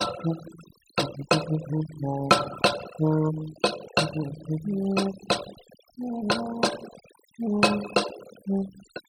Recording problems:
noise reduction artefacts; signal-to-artefact ratio 13 dB

